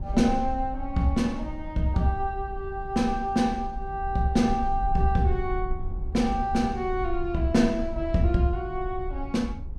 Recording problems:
low-frequency rumble; below 62 Hz, SNR 10 dB

